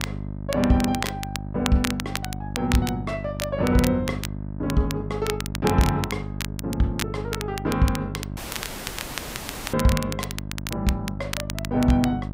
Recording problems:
mains hum; 50 Hz, harmonics up to 650 Hz, SNR 8 dB
crackling; vinyl, SNR 9 dB
audio cutting out; at 8.5 s for 1.5 s

